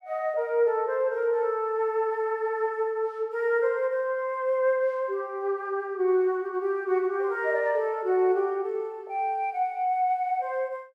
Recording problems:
none

